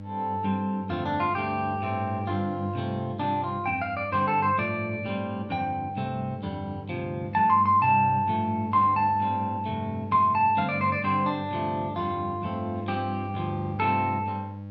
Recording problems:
electrical hum; 50 Hz, harmonics up to 800 Hz, SNR 11 dB

